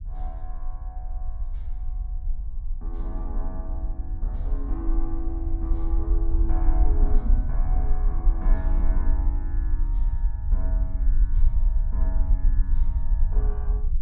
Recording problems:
rumble; below 46 Hz, strongest tone 28 Hz, SNR -12 dB

